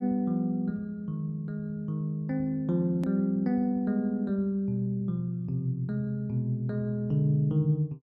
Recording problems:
click at an edit; at 3 s

